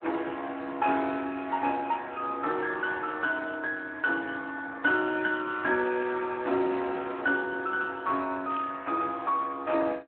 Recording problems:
phone line; 240 Hz to 3.3 kHz, Speex
static burst; at 6 s and at 8.5 s; peak -11 dB vs average level

